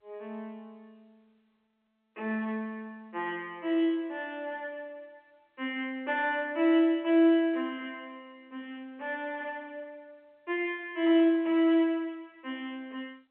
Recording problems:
phone line; 280 Hz to 3.6 kHz, G.711

